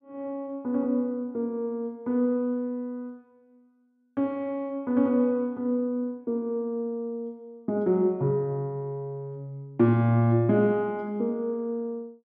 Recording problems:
none

